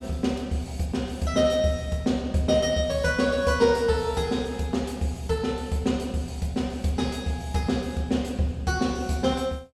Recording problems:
none

